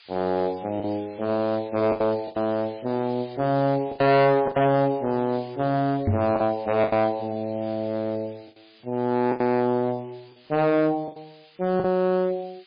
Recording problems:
lossy codec; MP3, log-spectral distance 10 dB, nothing above 4.5 kHz
distortion; hard clipping, uneven, signal-to-distortion ratio 7 dB
hiss; SNR 25 dB
lost packets; 6% of the sound replaced, filled with the last packet
knock on the microphone; at 6 s; peak +3 dB vs average level

